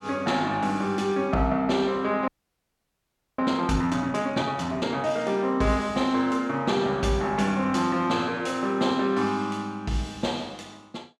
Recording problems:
audio freezing; at 2.5 s for 1 s

